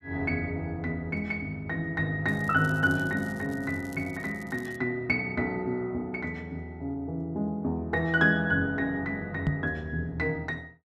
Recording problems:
crackle; from 2.5 to 5 s; loose cable, SNR 24 dB
microphone thump; at 9.5 s; peak +5 dB vs average level

